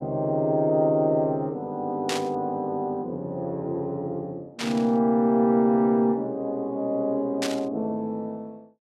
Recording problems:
static burst; at 2 s, at 4.5 s and at 7.5 s; peak 0 dB vs average level

